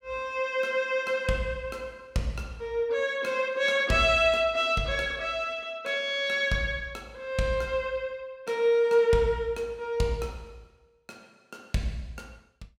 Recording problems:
none

